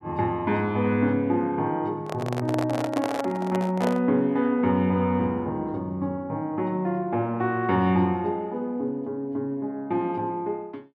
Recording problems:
microphone handling noise; from 2 to 4 s; peak 0 dB vs average level

